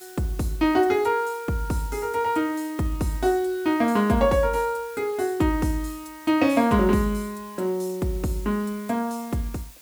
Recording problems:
hiss; slope +1 dB per octave, SNR 22 dB

